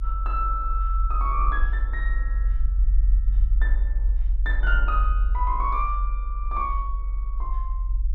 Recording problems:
rumble; below 46 Hz, strongest tone 44 Hz, SNR -4 dB

